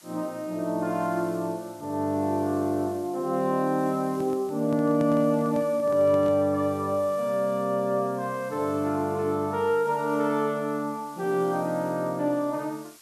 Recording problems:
hiss; SNR 25 dB
handling noise; from 4 to 6.5 s; peak -7 dB vs average level

